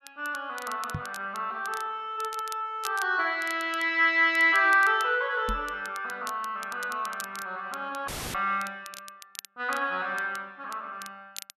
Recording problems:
crackle; vinyl, SNR 18 dB
microphone bump; at 1 s and at 5.5 s; peak -3 dB vs average level
audio cutting out; at 8 s; filled with static

